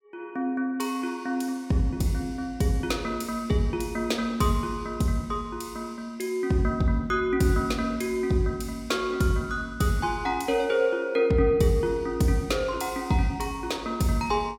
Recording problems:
none

